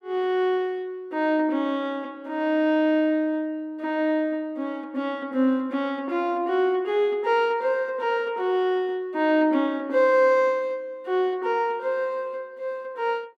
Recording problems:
none

